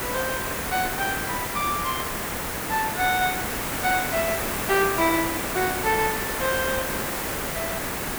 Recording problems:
background hiss; slope -4 dB per octave, SNR 1 dB

